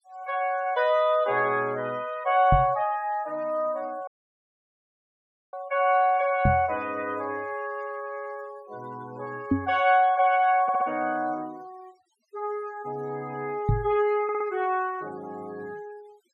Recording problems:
denoising artefacts; signal-to-artefact ratio 26 dB
knock on the microphone; 4 times, first at 2.5 s; peak +6 dB vs average level
dropout; at 4 s for 1.5 s
stutter; at 11 s and at 14 s

